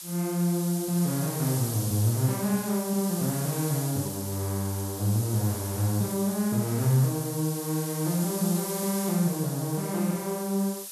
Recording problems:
hiss; SNR 7 dB

